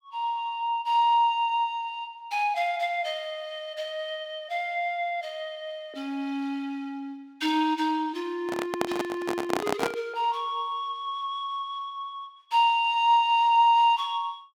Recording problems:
handling noise; from 8.5 to 10 s; peak +3 dB vs average level

